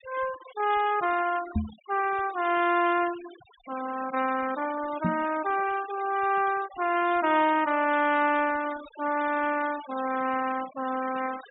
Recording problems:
treble cut off; nothing above 4 kHz
noise reduction artefacts; signal-to-artefact ratio 16 dB
microphone bump; at 1.5 s and at 5 s; peak +3 dB vs average level

